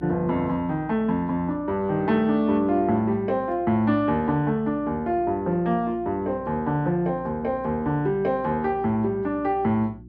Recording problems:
hum; 60 Hz, harmonics up to 360 Hz, SNR 22 dB

